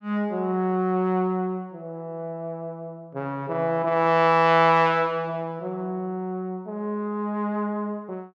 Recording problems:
none

